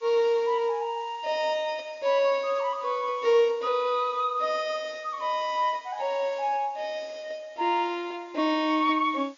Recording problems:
low-pass filter; nothing above 7.1 kHz
background hiss; SNR 29 dB

